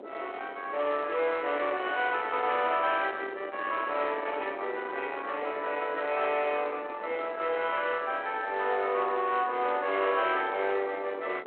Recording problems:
telephone audio; 320 Hz to 3.9 kHz, G.726
distorted audio; soft clipping, signal-to-distortion ratio 13 dB
wind noise; below 1.6 kHz, SNR 12 dB

